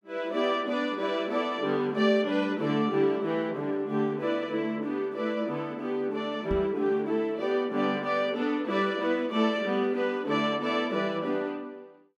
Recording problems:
microphone thump; at 6.5 s; peak -2 dB vs average level

